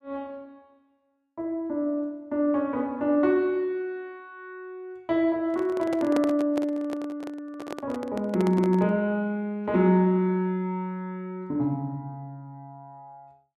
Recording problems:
microphone handling noise; from 5.5 to 9 s; peak -1 dB vs average level

